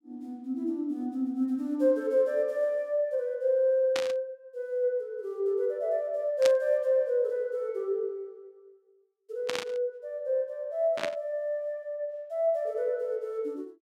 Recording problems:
burst of static; 4 times, first at 4 s; peak +1 dB vs average level

